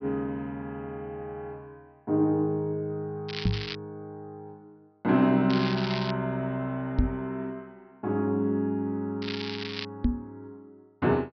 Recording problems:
treble cut off; nothing above 5.5 kHz
crackle; at 3.5 s, at 5.5 s and at 9 s; loose cable, SNR 8 dB
knock on the microphone; at 3.5 s, at 7 s and at 10 s; peak +8 dB vs average level

